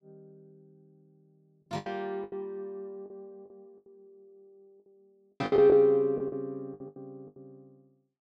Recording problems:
packet loss; 13% of the sound replaced, filled with the last packet

